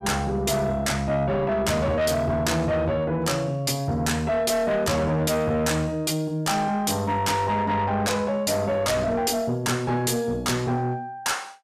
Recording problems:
distorted audio; soft clipping, signal-to-distortion ratio 7 dB

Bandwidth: 14.5 kHz